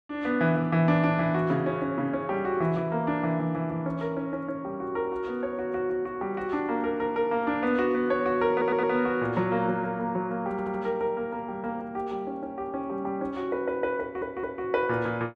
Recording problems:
stutter; at 8.5 s, at 11 s and at 14 s

